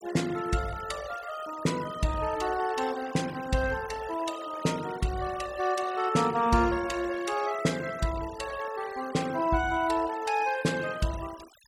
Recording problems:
denoising artefacts; signal-to-artefact ratio 16 dB

